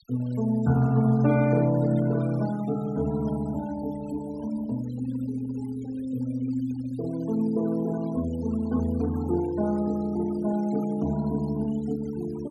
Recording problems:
noise reduction artefacts; signal-to-artefact ratio 19 dB

